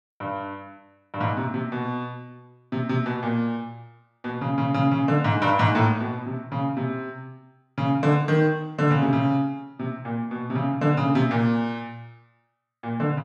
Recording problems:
none

